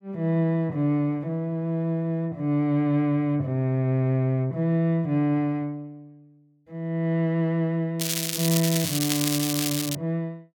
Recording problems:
crackle; from 8 to 10 s; loose cable, SNR 2 dB

